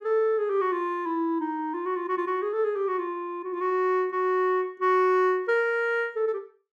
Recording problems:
none

